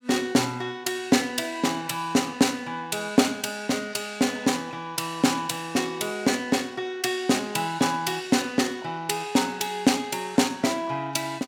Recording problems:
none

